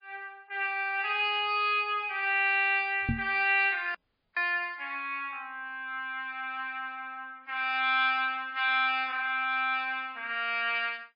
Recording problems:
codec artefacts; MP3, log-spectral distance 2 dB, nothing above 4.6 kHz
knock on the microphone; at 3 s; peak +2 dB vs average level
dropout; at 4 s

